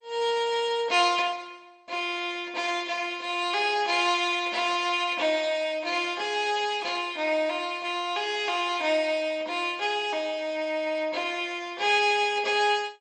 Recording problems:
lossy compression; MP2, log-spectral distance 3 dB, nothing above 8.5 kHz

